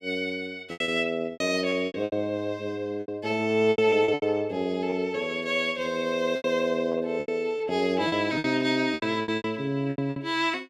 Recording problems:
packet loss; 13% of the sound replaced, filled with repeated pitch periods

